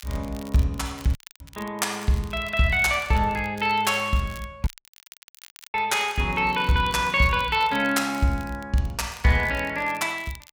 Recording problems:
crackle; vinyl, SNR 23 dB
dropout; at 1 s and at 4.5 s for 1 s

